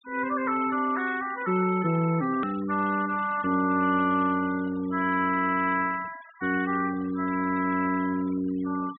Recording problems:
low-pass filter; nothing above 3.7 kHz
denoising artefacts; signal-to-artefact ratio 21 dB
hard cut with a click; at 2.5 s

